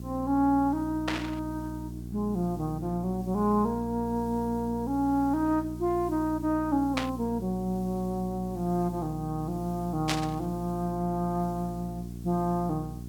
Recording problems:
hum; 60 Hz, harmonics up to 420 Hz, SNR 10 dB
hiss; slope 0 dB per octave, SNR 25 dB
burst of static; at 1 s, at 7 s and at 10 s; peak +4 dB vs average level

